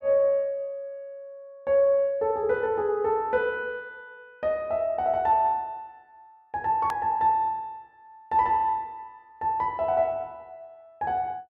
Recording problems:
click at an edit; at 7 s

